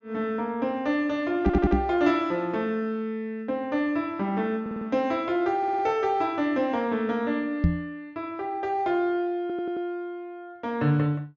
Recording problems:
treble missing; nothing above 6.9 kHz
stutter; 4 times, first at 1.5 s
knock on the microphone; at 1.5 s and at 7.5 s; peak +8 dB vs average level

